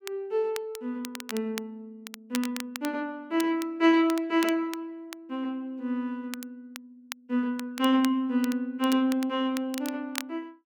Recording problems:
crackle; vinyl, SNR 14 dB

